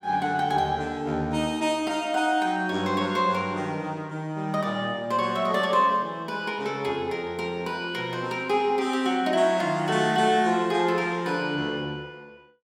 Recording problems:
none

